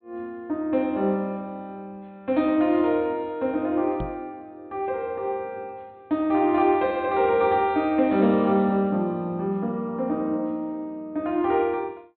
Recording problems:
treble cut off; nothing above 4.3 kHz
microphone bump; at 4 s; peak -5 dB vs average level

